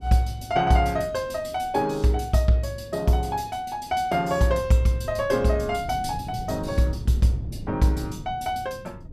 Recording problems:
wind on the microphone; below 180 Hz, SNR 15 dB

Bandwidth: 14.5 kHz